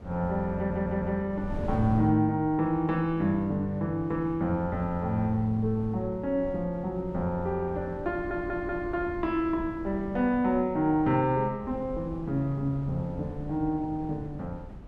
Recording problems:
wind on the microphone; below 250 Hz, SNR 13 dB
stutter; at 0.5 s and at 8 s

